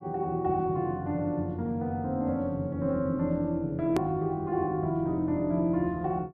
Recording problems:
hard cut with a click; at 4 s

